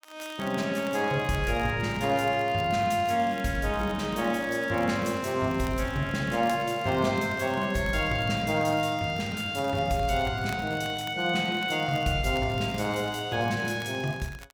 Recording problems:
crackle; vinyl, SNR 22 dB

